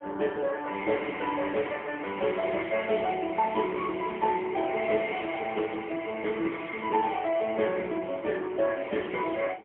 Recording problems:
telephone audio; 240 Hz to 3.3 kHz, AMR-NB, then MP3

